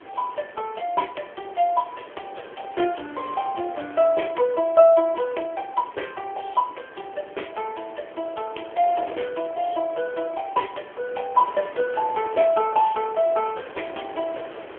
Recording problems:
phone line; 300 Hz to 3.3 kHz, AMR-NB
wind noise; below 1.4 kHz, SNR 17 dB

